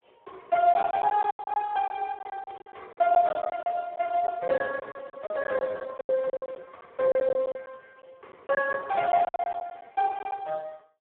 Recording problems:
telephone audio; 240 Hz to 2.1 kHz, Speex
packet loss; 13% of the sound replaced, filled with silence

